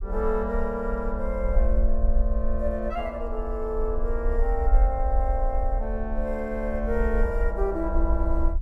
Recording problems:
low-frequency rumble; below 50 Hz, SNR -1 dB

